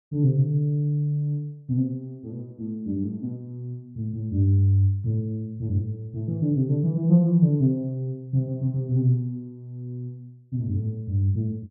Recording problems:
none

